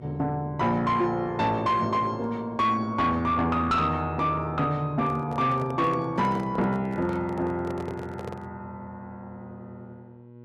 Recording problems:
distorted audio; soft clipping, signal-to-distortion ratio 12 dB
electrical hum; 60 Hz, harmonics up to 1.1 kHz, SNR 21 dB
handling noise; from 5 to 8.5 s; peak -6 dB vs average level

